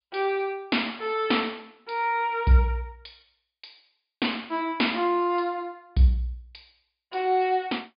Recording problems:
low-pass filter; nothing above 5 kHz

